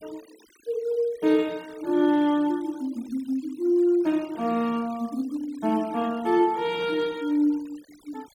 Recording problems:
denoising artefacts; signal-to-artefact ratio 24 dB

